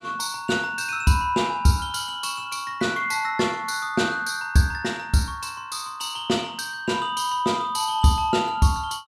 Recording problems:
none

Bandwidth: 15.5 kHz